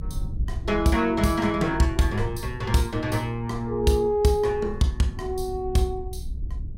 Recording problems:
low-frequency rumble; below 76 Hz, SNR 12 dB

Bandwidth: 16 kHz